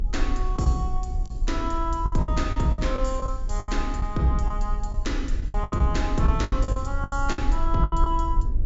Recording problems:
low-pass filter; nothing above 8 kHz
low-frequency rumble; below 50 Hz, strongest tone 32 Hz, SNR 2 dB
packet loss; 13% of the sound replaced, filled with the last packet

